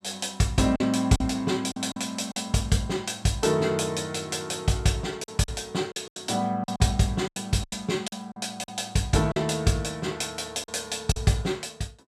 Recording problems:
packet loss; 7% of the sound replaced, filled with silence

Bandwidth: 14 kHz